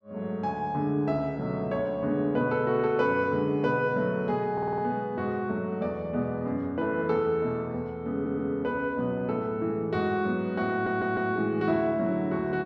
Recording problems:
audio stuttering; at 4.5 s, at 8 s and at 11 s

